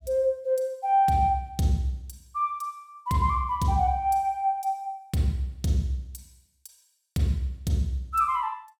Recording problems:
none

